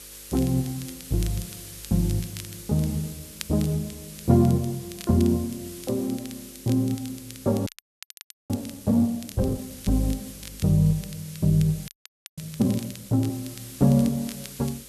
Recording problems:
hum; 50 Hz, harmonics up to 550 Hz, SNR 30 dB
background hiss; slope +3 dB per octave, SNR 16 dB
crackle; vinyl, SNR 20 dB
frozen audio; at 7.5 s for 1 s and at 12 s

